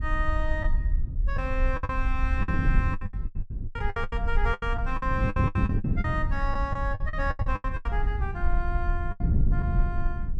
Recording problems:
rumble; below 56 Hz, SNR -1 dB
wind on the microphone; below 170 Hz, SNR 0 dB
packet loss; 15% of the sound replaced, filled with the last packet

